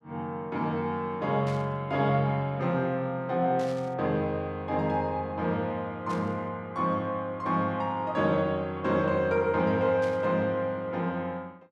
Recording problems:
static burst; 4 times, first at 1.5 s; peak -13 dB vs average level

